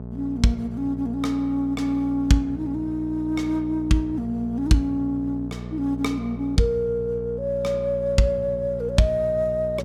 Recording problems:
hum; 60 Hz, harmonics up to 900 Hz, SNR 10 dB

